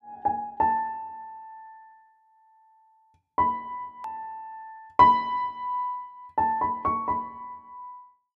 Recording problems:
edit click; at 4 s

